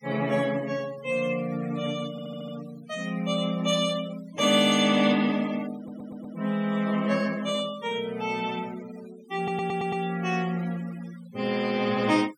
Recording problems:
denoising artefacts; signal-to-artefact ratio 20 dB
audio stuttering; at 2 s, at 6 s and at 9.5 s

